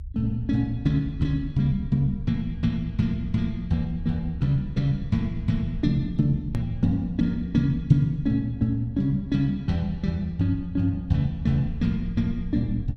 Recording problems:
low-frequency rumble; below 72 Hz, SNR 12 dB
edit click; at 6.5 s

